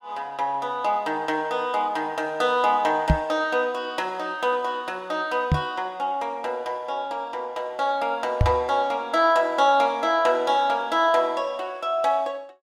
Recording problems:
microphone thump; at 3 s, at 5.5 s and at 8.5 s; peak +7 dB vs average level

